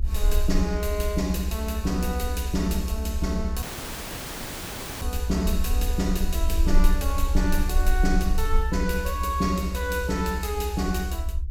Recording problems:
rumble; below 62 Hz, SNR 0 dB
dropout; at 3.5 s for 1.5 s

